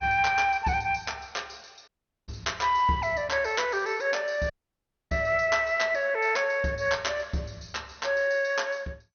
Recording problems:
lossy codec; MP2, log-spectral distance 6 dB, nothing above 6.3 kHz
dropout; at 2 s and at 4.5 s for 0.5 s

